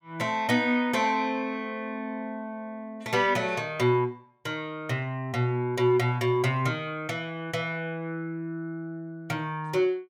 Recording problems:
none

